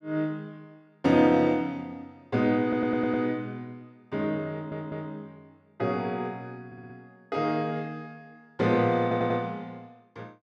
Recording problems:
stutter; 4 times, first at 2.5 s

